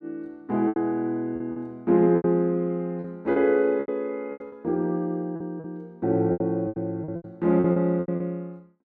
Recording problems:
lost packets; 13% of the sound replaced, filled with repeated pitch periods

